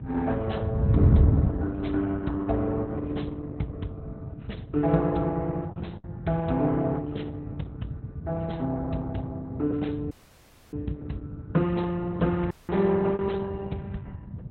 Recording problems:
codec artefacts; Opus, log-spectral distance 2 dB, nothing above 4.1 kHz
electrical hum; 50 Hz, harmonics up to 900 Hz, SNR 24 dB
wind on the microphone; below 140 Hz, SNR 3 dB
packet loss; 1.2% of the sound replaced, filled with the last packet
audio cutting out; at 10 s for 0.5 s and at 13 s

